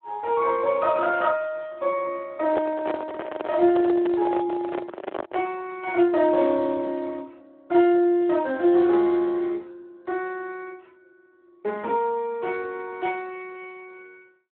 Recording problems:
telephone audio; 240 Hz to 2.9 kHz, Speex
microphone handling noise; from 2.5 to 5.5 s; peak 0 dB vs average level

